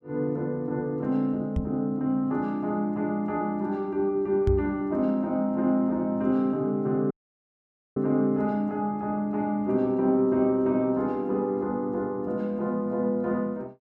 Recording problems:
microphone bump; at 1.5 s and at 4.5 s; peak +4 dB vs average level
dropout; at 7 s for 1 s

